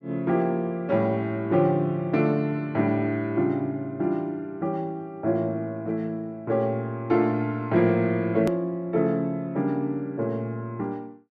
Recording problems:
edit click; at 8.5 s

